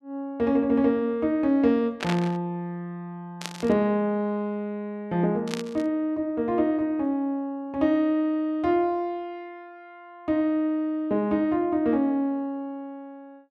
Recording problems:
burst of static; at 2 s, at 3.5 s and at 5.5 s; peak -1 dB vs average level

